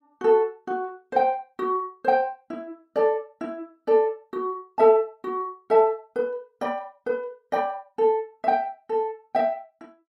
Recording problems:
none

